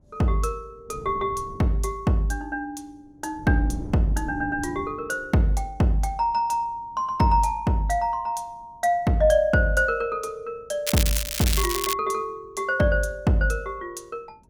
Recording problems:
wind noise; below 230 Hz, SNR 16 dB
crackling; from 11 to 12 s; loose cable, SNR 3 dB

